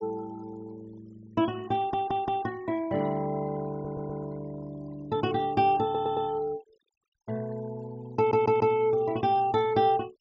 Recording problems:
treble cut off; nothing above 8 kHz
denoising artefacts; signal-to-artefact ratio 23 dB
stutter; 4 times, first at 2 s

